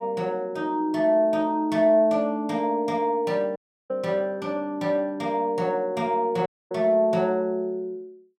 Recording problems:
dropout; at 3.5 s and at 6.5 s

